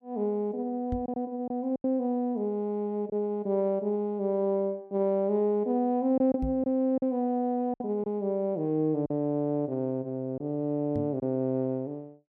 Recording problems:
packet loss; 3% of the sound replaced, filled with silence
microphone bump; at 1 s, at 6.5 s and at 11 s; peak -1 dB vs average level

